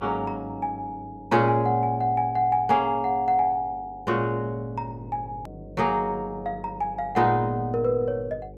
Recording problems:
hum; 50 Hz, harmonics up to 550 Hz, SNR 21 dB
click at an edit; at 5.5 s

